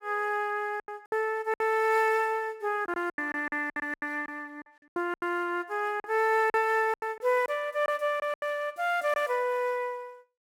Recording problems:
lost packets; 11% of the sound replaced, filled with silence

